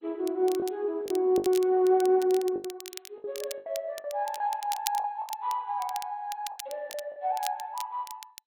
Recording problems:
lossy compression; MP2, log-spectral distance 2 dB
crackling; vinyl, SNR 14 dB
lost packets; 9% of the sound replaced, filled with the last packet

